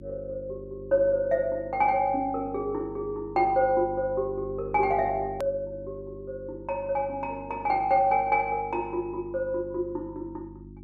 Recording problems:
hum; 50 Hz, harmonics up to 350 Hz, SNR 17 dB
click at an edit; at 5.5 s

